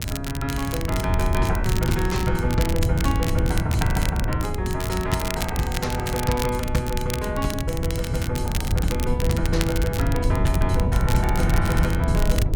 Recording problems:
electrical hum; 50 Hz, harmonics up to 600 Hz, SNR 16 dB
wind on the microphone; below 120 Hz, SNR -1 dB
crackling; vinyl, SNR 7 dB

